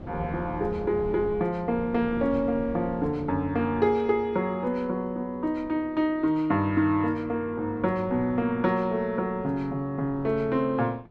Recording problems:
wind on the microphone; below 360 Hz, SNR 17 dB

